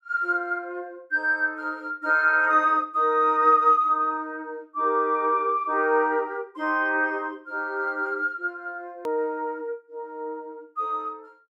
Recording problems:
hard cut with a click; at 9 s

